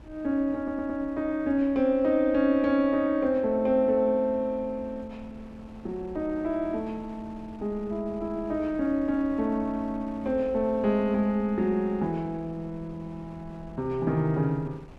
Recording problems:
wind on the microphone; below 370 Hz, SNR 22 dB
stutter; at 0.5 s

